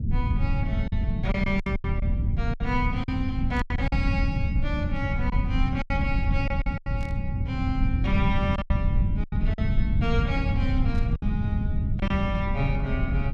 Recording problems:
rumble; below 120 Hz, SNR -4 dB
packet loss; 8% of the sound replaced, filled with silence
static burst; 5 times, first at 1.5 s; peak -11 dB vs average level

